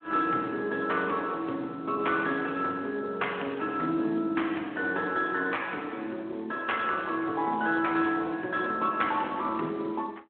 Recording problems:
telephone audio; 240 Hz to 3.4 kHz, Speex

